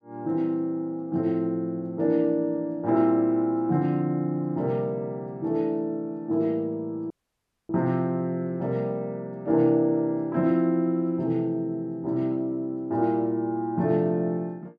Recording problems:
dropout; at 7 s for 0.5 s

